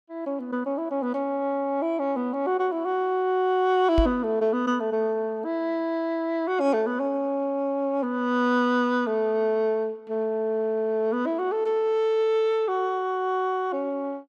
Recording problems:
microphone thump; at 4 s; peak +4 dB vs average level

